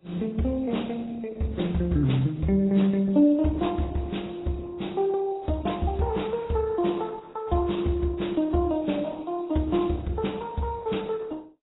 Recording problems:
codec artefacts; Opus, then AAC, log-spectral distance 5 dB, nothing above 3.9 kHz

